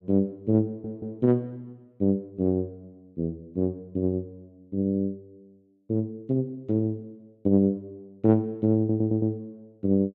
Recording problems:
audio stuttering; at 0.5 s and at 9 s

